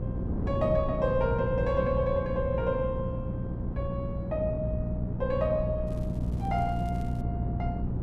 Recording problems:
electrical hum; 60 Hz, harmonics up to 480 Hz, SNR 4 dB
wind noise; below 220 Hz, SNR 4 dB
crackling; from 6 to 7 s; loose cable, SNR 28 dB

